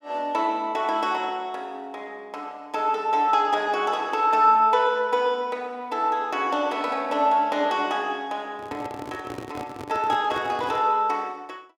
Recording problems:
microphone handling noise; from 8.5 to 11 s; peak -8 dB vs average level

